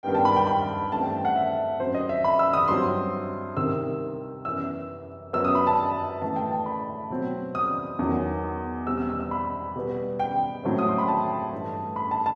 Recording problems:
none

